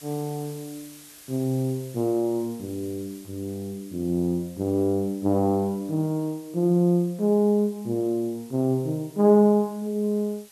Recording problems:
hiss; slope +1 dB per octave, SNR 23 dB

